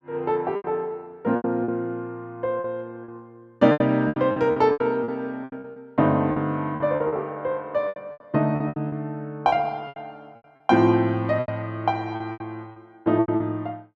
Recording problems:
lost packets; 14% of the sound replaced, filled with repeated pitch periods

